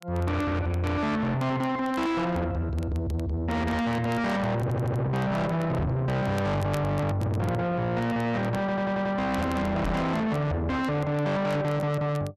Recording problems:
distortion; soft clipping, signal-to-distortion ratio 6 dB
crackle; vinyl, SNR 24 dB
stutter; at 4.5 s and at 8.5 s
microphone bump; at 6 s and at 10 s; peak +4 dB vs average level

